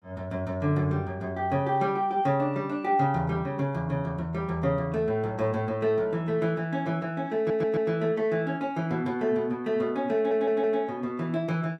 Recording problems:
stutter; at 7.5 s and at 10 s

